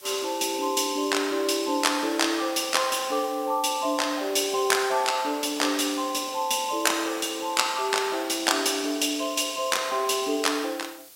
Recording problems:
background hiss; slope 0 dB per octave, SNR 22 dB

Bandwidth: 16 kHz